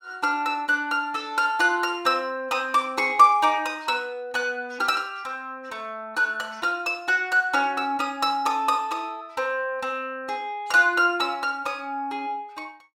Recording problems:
none

